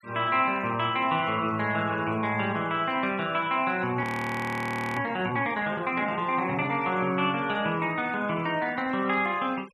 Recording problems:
denoising artefacts; signal-to-artefact ratio 24 dB
frozen audio; at 4 s for 1 s

